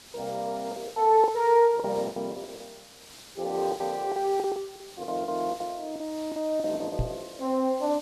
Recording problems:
hiss; SNR 19 dB
packet loss; 14% of the sound replaced, filled with the last packet
knock on the microphone; at 7 s; peak +2 dB vs average level

